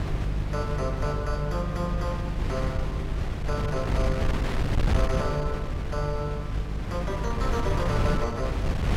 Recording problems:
hum; 50 Hz, harmonics up to 500 Hz, SNR 1 dB
wind on the microphone; below 170 Hz, SNR -2 dB

